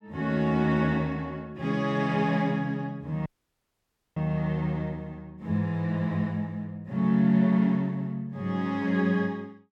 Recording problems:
audio cutting out; at 3.5 s for 1 s

